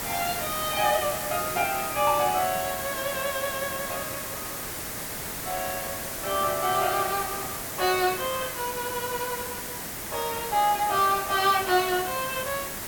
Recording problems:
hiss; slope -3 dB per octave, SNR 5 dB

